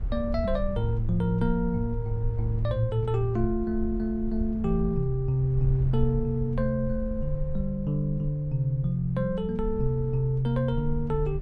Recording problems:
low-frequency rumble; below 62 Hz, SNR 8 dB

